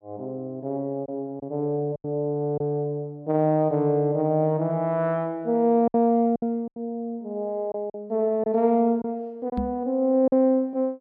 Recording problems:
lost packets; 5% of the sound replaced, filled with silence
microphone thump; at 9.5 s; peak 0 dB vs average level

